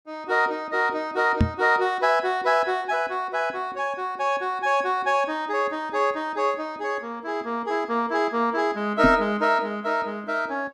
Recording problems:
microphone thump; at 1.5 s and at 9 s; peak +7 dB vs average level

